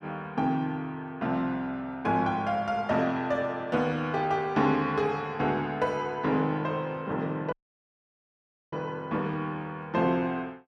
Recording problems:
dropout; at 7.5 s for 1 s

